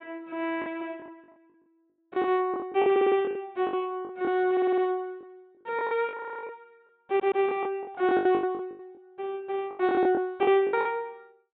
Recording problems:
treble missing; nothing above 4 kHz
packet loss; 15% of the sound replaced, filled with the last packet
stutter; 4 times, first at 3 s

